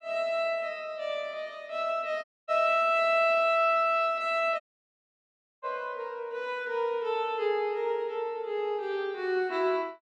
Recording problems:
dropout; at 2 s and at 4.5 s for 1 s

